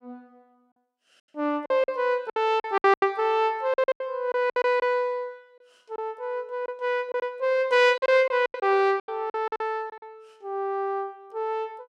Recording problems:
packet loss; 11% of the sound replaced, filled with silence

